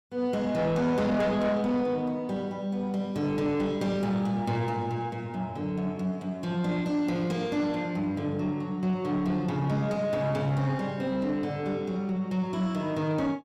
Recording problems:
distorted audio; soft clipping, signal-to-distortion ratio 11 dB

